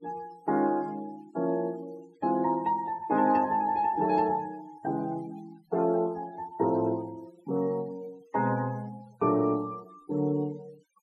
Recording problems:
denoising artefacts; signal-to-artefact ratio 24 dB

